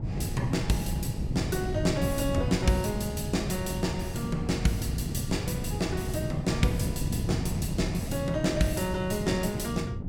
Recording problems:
wind on the microphone; below 190 Hz, SNR 2 dB

